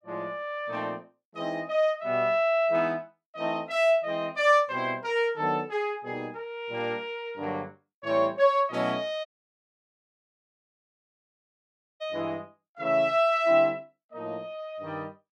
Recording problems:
dropout; at 9.5 s for 3 s

